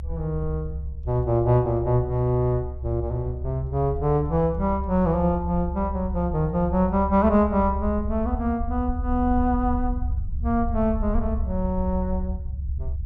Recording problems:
rumble; below 70 Hz, strongest tone 68 Hz, SNR 7 dB

